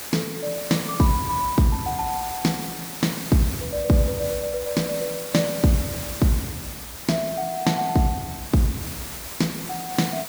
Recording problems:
background hiss; slope -1 dB per octave, SNR 8 dB

